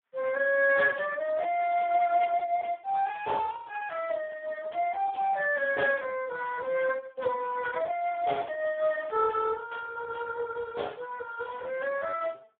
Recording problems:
phone line; 340 Hz to 2.8 kHz, Speex

